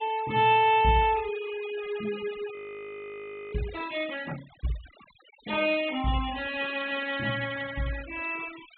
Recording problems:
treble missing; nothing above 4 kHz
denoising artefacts; signal-to-artefact ratio 17 dB
frozen audio; at 2.5 s for 1 s

